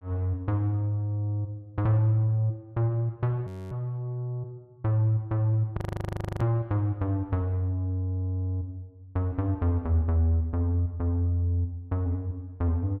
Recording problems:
audio freezing; at 3.5 s and at 6 s for 0.5 s

